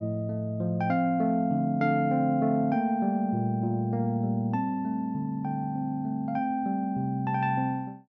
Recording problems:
none

